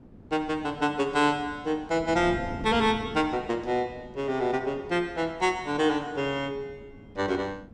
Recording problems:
wind noise; below 290 Hz, SNR 17 dB

